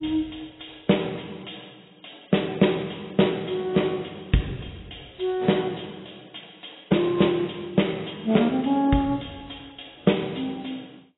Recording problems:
lossy codec; AAC, log-spectral distance 12 dB, nothing above 3.8 kHz

